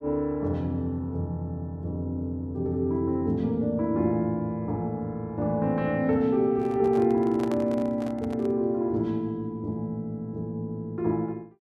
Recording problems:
handling noise; from 6.5 to 8.5 s; peak -6 dB vs average level

